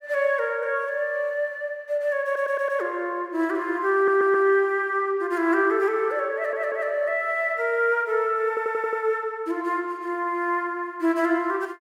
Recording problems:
stutter; 4 times, first at 2.5 s

